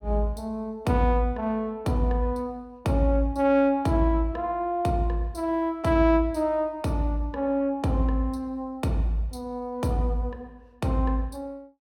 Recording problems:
none

